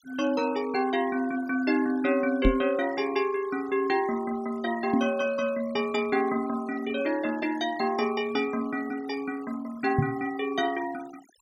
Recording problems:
denoising artefacts; signal-to-artefact ratio 20 dB
knock on the microphone; at 2.5 s, at 5 s and at 10 s; peak +8 dB vs average level

